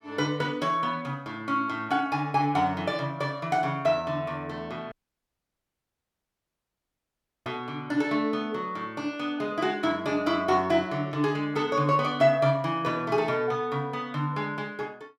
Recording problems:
dropout; at 5 s for 2.5 s

